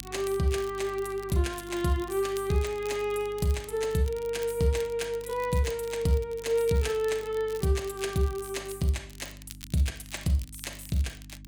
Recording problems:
electrical hum; 50 Hz, harmonics up to 300 Hz, SNR 20 dB
crackling; vinyl, SNR 19 dB

